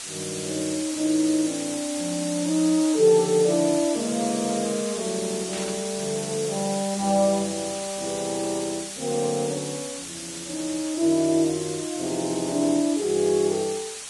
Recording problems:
lossy codec; Vorbis, log-spectral distance 12 dB
hiss; slope +2 dB per octave, SNR 8 dB
static burst; at 5.5 s; peak -7 dB vs average level

